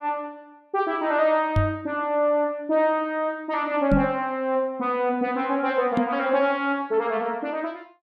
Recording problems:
microphone bump; at 1.5 s, at 4 s and at 6 s; peak +5 dB vs average level

